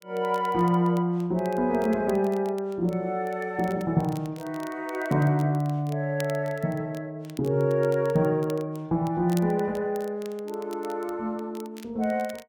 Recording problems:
crackling; vinyl, SNR 23 dB

